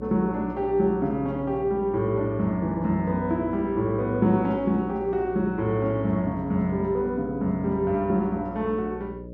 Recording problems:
hum; 60 Hz, harmonics up to 600 Hz, SNR 14 dB

